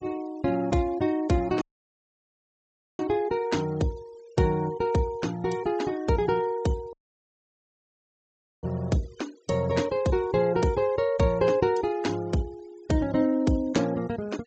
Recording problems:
treble cut off; nothing above 8 kHz
noise reduction artefacts; signal-to-artefact ratio 22 dB
dropout; at 1.5 s for 1.5 s and at 7 s for 1.5 s

